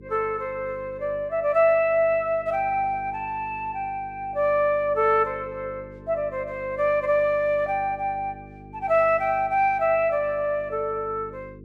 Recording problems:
hum; 50 Hz, harmonics up to 450 Hz, SNR 21 dB

